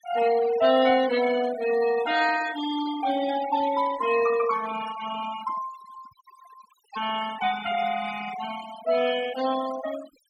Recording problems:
denoising artefacts; signal-to-artefact ratio 12 dB

